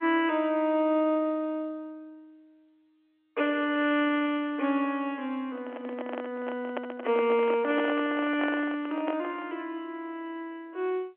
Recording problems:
telephone audio; 240 Hz to 3.3 kHz, G.711
handling noise; from 5.5 to 9.5 s; peak -1 dB vs average level

